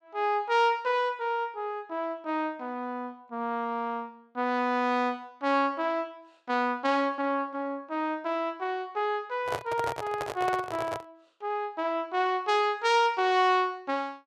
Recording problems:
microphone handling noise; from 9.5 to 11 s; peak -1 dB vs average level

